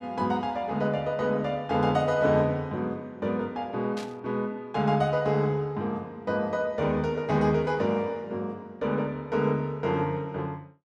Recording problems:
static burst; at 4 s; peak -9 dB vs average level

